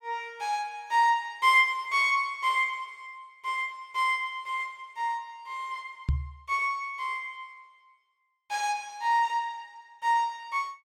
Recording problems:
microphone bump; at 6 s; peak +4 dB vs average level

